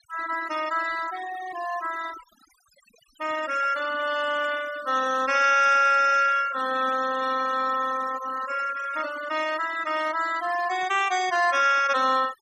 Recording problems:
denoising artefacts; signal-to-artefact ratio 14 dB

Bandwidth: 14.5 kHz